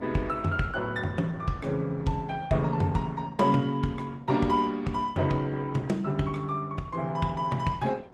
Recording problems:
codec artefacts; Opus, log-spectral distance 2 dB, nothing above 15.1 kHz
wind on the microphone; below 660 Hz, SNR 23 dB

